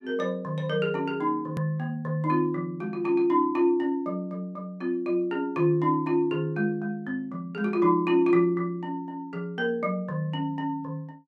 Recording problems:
hard cut with a click; at 1.5 s

